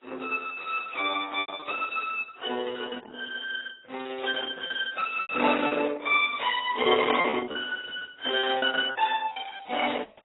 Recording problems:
lossy compression; Opus, then AAC, log-spectral distance 6 dB, nothing above 3.2 kHz
lost packets; 6% of the sound replaced, filled with repeated pitch periods

